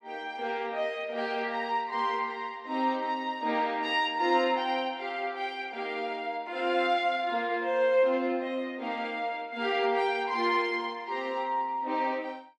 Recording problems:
none

